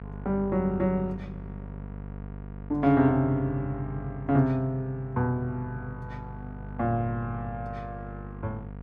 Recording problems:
hum; 50 Hz, harmonics up to 1.4 kHz, SNR 12 dB

